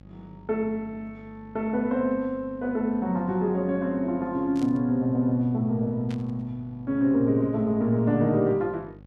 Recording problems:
hum; 50 Hz, harmonics up to 850 Hz, SNR 23 dB
burst of static; at 4.5 s and at 6 s; peak -15 dB vs average level

